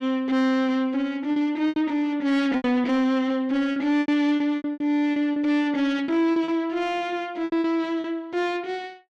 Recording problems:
distorted audio; soft clipping, signal-to-distortion ratio 11 dB
lost packets; 10% of the sound replaced, filled with repeated pitch periods

